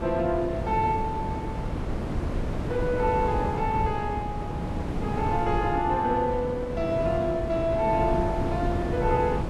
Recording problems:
lossy codec; Vorbis, log-spectral distance 2 dB
wind on the microphone; below 360 Hz, SNR 4 dB

